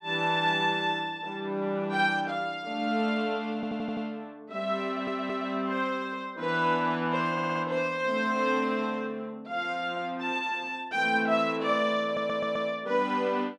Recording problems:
audio stuttering; 4 times, first at 3.5 s

